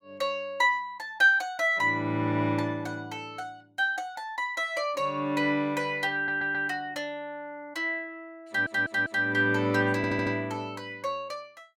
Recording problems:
stutter; at 6 s, at 8.5 s and at 10 s

